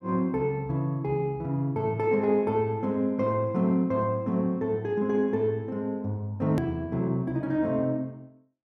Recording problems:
edit click; at 6.5 s

